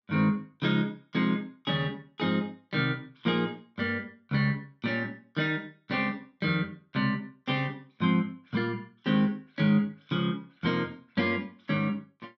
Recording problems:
none

